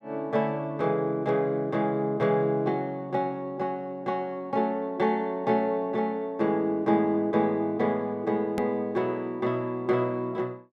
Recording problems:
hard cut with a click; at 8.5 s

